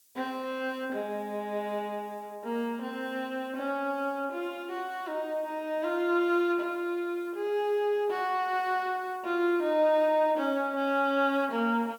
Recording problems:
hiss; SNR 30 dB

